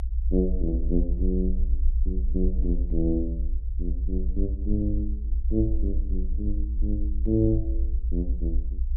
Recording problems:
low-frequency rumble; below 58 Hz, strongest tone 24 Hz, SNR -1 dB

